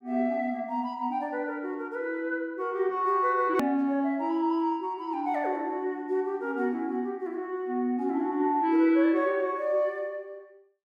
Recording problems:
edit click; at 3.5 s

